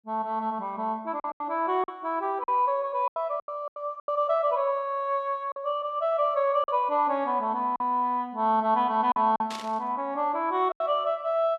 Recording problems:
lost packets; 7% of the sound replaced, filled with silence
static burst; at 9.5 s; peak -7 dB vs average level

